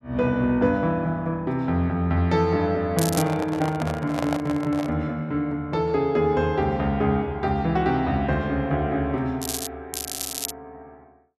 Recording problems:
crackling; at 3 s, at 9.5 s and at 10 s; loose cable, SNR 7 dB
handling noise; from 3 to 5 s; peak -1 dB vs average level

